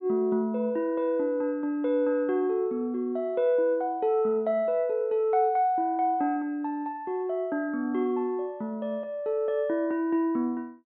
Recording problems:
treble missing; nothing above 4 kHz

